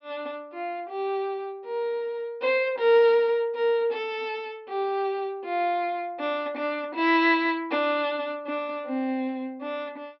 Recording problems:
treble cut off; nothing above 5.5 kHz

